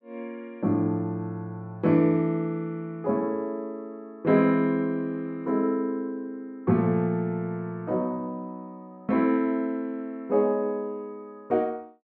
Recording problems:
none

